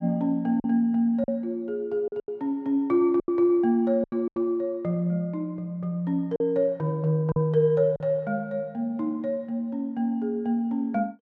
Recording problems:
packet loss; 5% of the sound replaced, filled with silence

